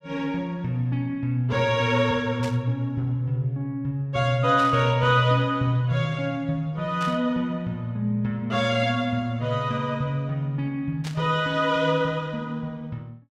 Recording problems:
burst of static; 4 times, first at 2.5 s; peak -8 dB vs average level

